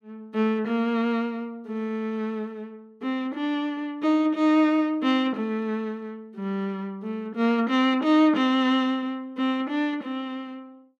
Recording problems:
none

